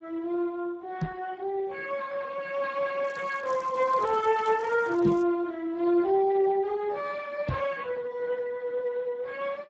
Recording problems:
codec artefacts; Speex, log-spectral distance 3 dB
microphone thump; at 1 s, at 5 s and at 7.5 s; peak +5 dB vs average level
crackling; from 3 to 5 s; loose cable, SNR 28 dB

